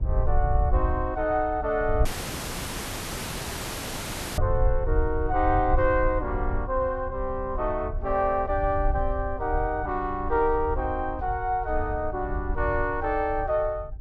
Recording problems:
low-frequency rumble; below 70 Hz, SNR 5 dB
dropout; at 2 s for 2.5 s

